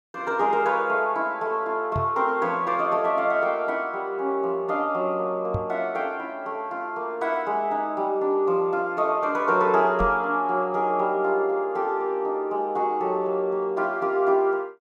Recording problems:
knock on the microphone; at 2 s, at 5.5 s and at 10 s; peak 0 dB vs average level

